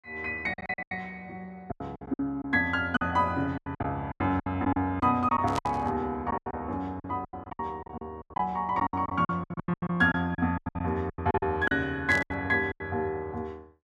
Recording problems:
lost packets; 17% of the sound replaced, filled with silence
static burst; at 5.5 s and at 12 s; peak -5 dB vs average level

